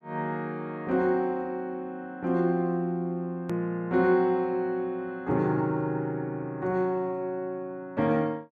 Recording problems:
hard cut with a click; at 3.5 s

